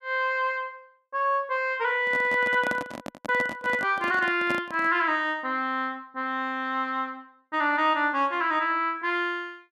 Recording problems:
handling noise; from 2 to 5 s; peak -3 dB vs average level

